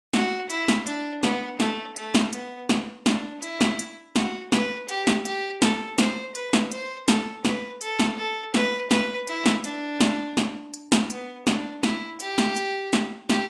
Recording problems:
lossy codec; AAC, log-spectral distance 3 dB

